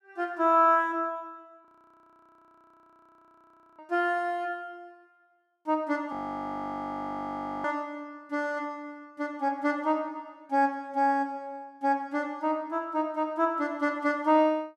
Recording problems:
audio freezing; at 1.5 s for 2 s and at 6 s for 1.5 s

